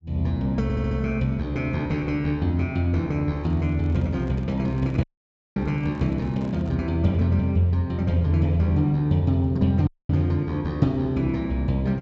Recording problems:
low-pass filter; nothing above 8 kHz
audio stuttering; at 0.5 s
handling noise; from 3.5 to 7 s; peak -12 dB vs average level
audio cutting out; at 5 s for 0.5 s and at 10 s

